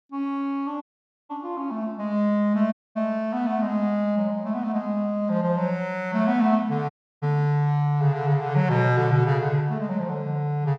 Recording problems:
dropout; at 1 s, at 2.5 s and at 7 s

